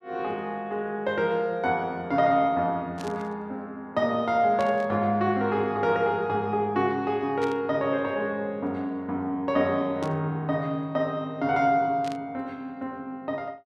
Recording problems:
static burst; 5 times, first at 3 s; peak -9 dB vs average level

